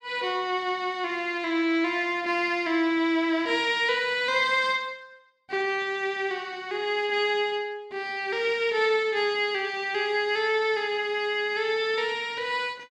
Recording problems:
none

